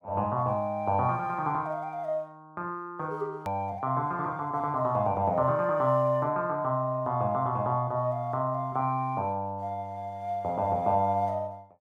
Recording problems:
hard cut with a click; at 3.5 s

